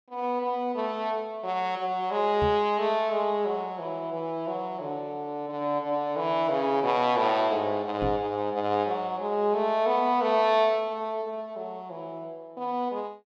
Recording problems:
microphone bump; at 2.5 s and at 8 s; peak -2 dB vs average level

